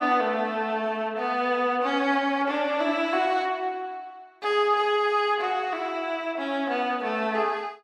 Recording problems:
none

